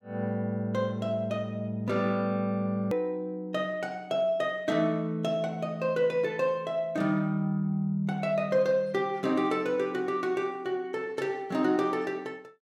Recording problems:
hard cut with a click; at 3 s

